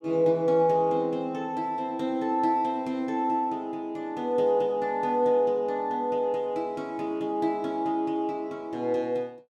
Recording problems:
none

